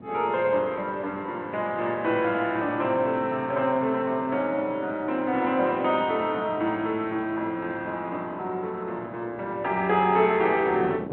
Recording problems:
phone line; 190 Hz to 3.4 kHz, G.726
wind noise; below 430 Hz, SNR 18 dB

